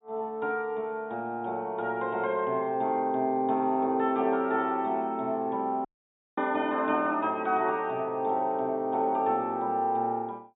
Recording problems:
treble missing; nothing above 4 kHz
dropout; at 6 s for 0.5 s

